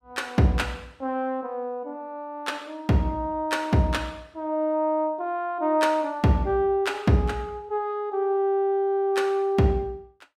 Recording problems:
none

